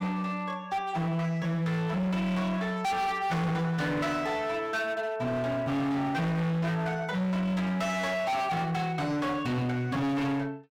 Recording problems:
distorted audio; hard clipping, signal-to-distortion ratio 6 dB

